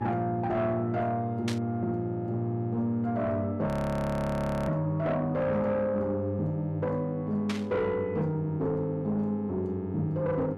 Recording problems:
distorted audio; soft clipping, signal-to-distortion ratio 11 dB
hum; 50 Hz, harmonics up to 1.7 kHz, SNR 12 dB
burst of static; at 1.5 s and at 7.5 s; peak -1 dB vs average level
frozen audio; at 3.5 s for 1 s

